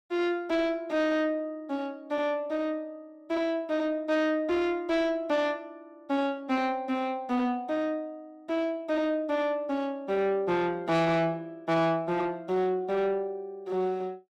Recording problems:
distortion; soft clipping, signal-to-distortion ratio 11 dB

